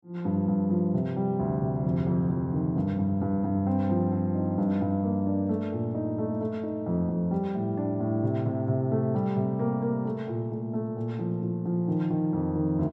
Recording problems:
none

